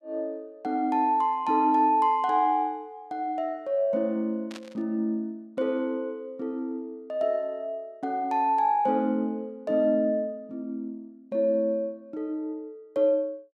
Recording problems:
burst of static; at 4.5 s; peak -11 dB vs average level

